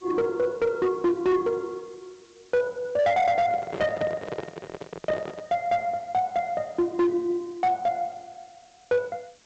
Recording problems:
lossy codec; G.722, log-spectral distance 5 dB, nothing above 7.8 kHz
distortion; hard clipping, signal-to-distortion ratio 11 dB
background hiss; slope -1 dB per octave, SNR 30 dB
microphone handling noise; from 3.5 to 5.5 s; peak -2 dB vs average level

